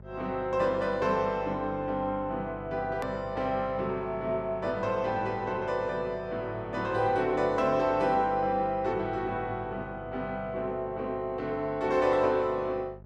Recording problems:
hum; 50 Hz, harmonics up to 850 Hz, SNR 18 dB
edit click; at 3 s

